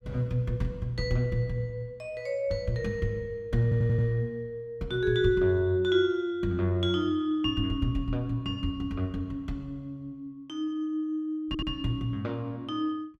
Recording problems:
audio stuttering; at 3.5 s and at 11 s

